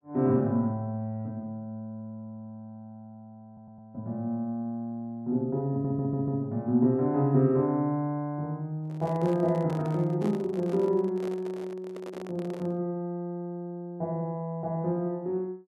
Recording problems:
stutter; at 3.5 s and at 5.5 s
handling noise; from 9 to 13 s; peak -7 dB vs average level

